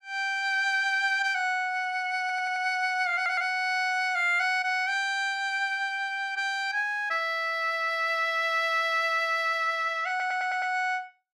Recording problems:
stutter; at 2 s, at 3 s and at 10 s

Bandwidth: 14.5 kHz